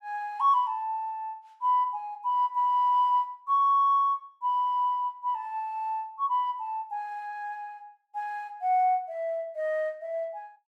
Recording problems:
none

